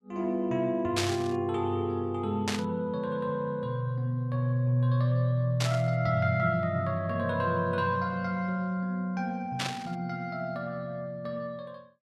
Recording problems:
static burst; 4 times, first at 1 s; peak +4 dB vs average level

